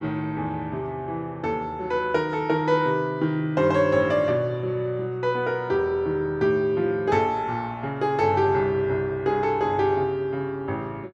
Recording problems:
none

